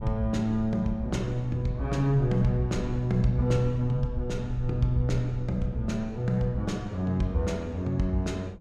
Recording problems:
low-frequency rumble; below 96 Hz, SNR 12 dB

